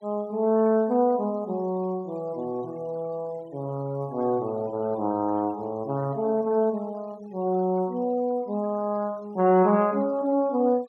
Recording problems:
denoising artefacts; signal-to-artefact ratio 27 dB

